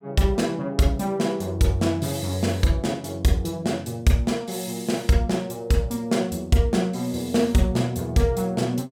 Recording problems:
none

